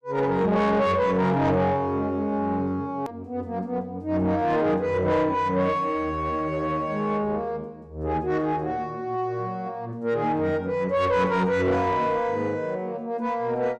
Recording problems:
distortion; soft clipping, signal-to-distortion ratio 11 dB
edit click; at 3 s

